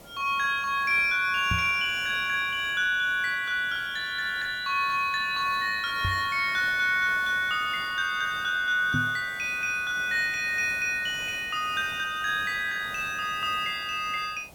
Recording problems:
hiss; SNR 21 dB
knock on the microphone; at 1.5 s, at 6 s and at 9 s; peak 0 dB vs average level

